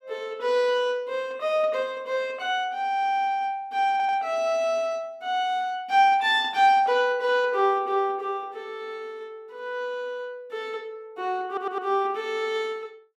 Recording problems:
audio stuttering; at 4 s and at 11 s

